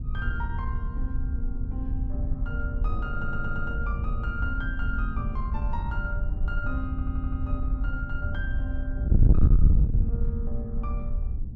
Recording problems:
distortion; soft clipping, signal-to-distortion ratio 8 dB
wind noise; below 82 Hz, SNR -8 dB
stutter; at 3 s and at 7 s

